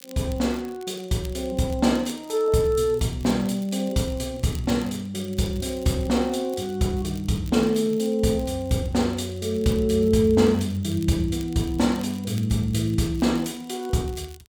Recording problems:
crackling; vinyl, SNR 24 dB

